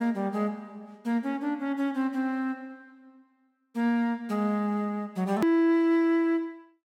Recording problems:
click at an edit; at 5.5 s

